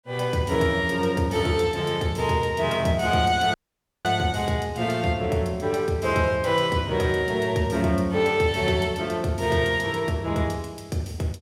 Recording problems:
dropout; at 3.5 s for 0.5 s

